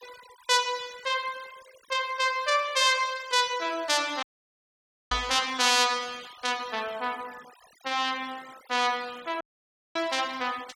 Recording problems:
denoising artefacts; signal-to-artefact ratio 22 dB
audio cutting out; at 4 s for 1 s and at 9.5 s for 0.5 s
microphone thump; at 5 s; peak -8 dB vs average level

